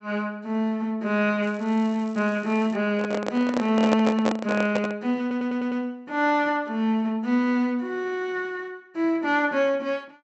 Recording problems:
low-pass filter; nothing above 7.8 kHz
crackle; from 1.5 to 3 s; loose cable, SNR 28 dB
microphone handling noise; from 3 to 5 s; peak +4 dB vs average level
audio stuttering; at 5 s

